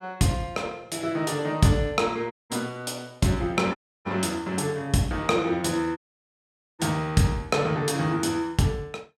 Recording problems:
audio cutting out; at 2.5 s, at 4 s and at 6 s for 1 s

